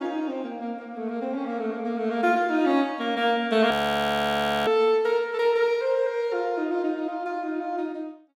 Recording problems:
audio freezing; at 3.5 s for 1 s

